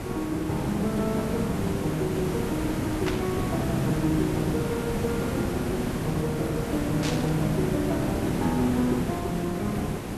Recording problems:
background hiss; slope -7 dB per octave, SNR 1 dB
burst of static; at 3 s and at 7 s; peak +1 dB vs average level

